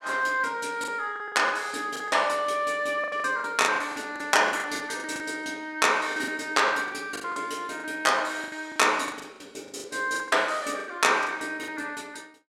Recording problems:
packet loss; 13% of the sound replaced, filled with the last packet

